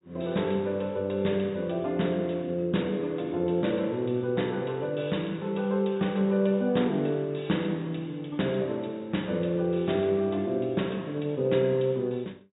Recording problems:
low-pass filter; nothing above 4 kHz

